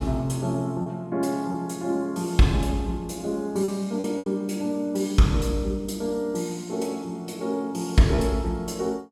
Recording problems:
packet loss; 3% of the sound replaced, filled with repeated pitch periods

